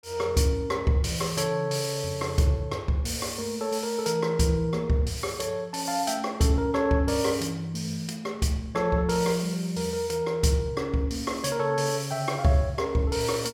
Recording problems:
none

